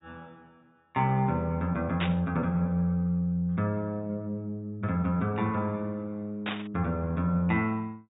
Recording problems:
low-pass filter; nothing above 4 kHz
static burst; at 2 s and at 6.5 s; peak +1 dB vs average level

